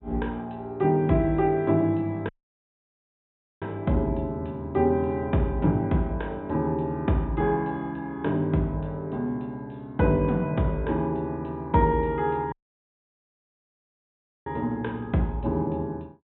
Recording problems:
treble cut off; nothing above 3.8 kHz
dropout; at 2.5 s for 1.5 s and at 13 s for 2 s

